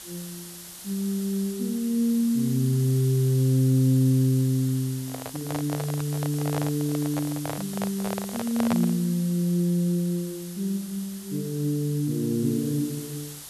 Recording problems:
background hiss; slope +1 dB per octave, SNR 13 dB
handling noise; from 5 to 9 s; peak 0 dB vs average level

